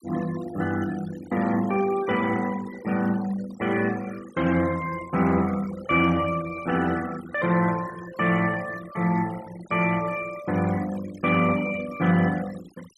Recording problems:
noise reduction artefacts; signal-to-artefact ratio 18 dB

